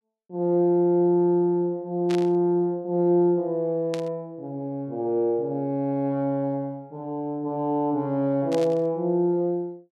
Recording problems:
burst of static; at 2 s, at 4 s and at 8.5 s; peak -8 dB vs average level

